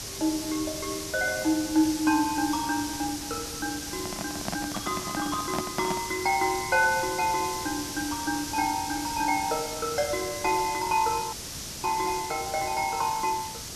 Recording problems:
background hiss; SNR 6 dB
handling noise; from 4 to 6 s; peak +1 dB vs average level
dropout; at 11 s for 0.5 s

